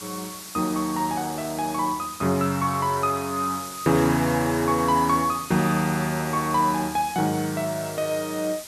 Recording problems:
background hiss; slope +1 dB per octave, SNR 13 dB

